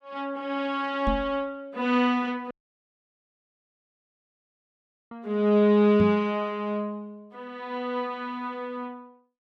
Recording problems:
knock on the microphone; at 1 s and at 6 s; peak +2 dB vs average level
dropout; at 2.5 s for 2.5 s

